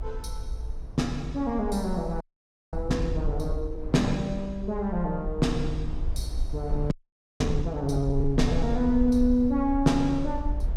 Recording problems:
rumble; below 54 Hz, SNR 7 dB
wind noise; below 320 Hz, SNR 20 dB
frozen audio; at 2 s for 0.5 s and at 7 s

